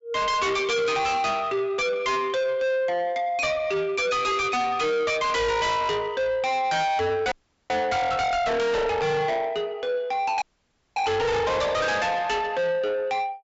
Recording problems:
treble missing; nothing above 8 kHz
distorted audio; soft clipping, signal-to-distortion ratio 6 dB
audio cutting out; at 7.5 s and at 10 s for 0.5 s

